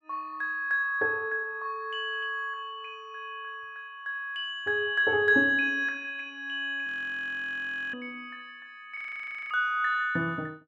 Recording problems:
frozen audio; at 7 s for 1 s and at 9 s for 0.5 s

